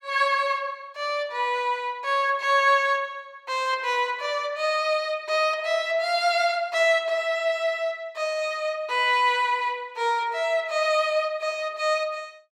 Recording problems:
none

